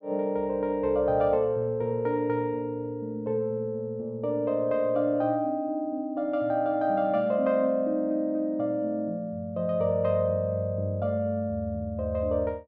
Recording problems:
none

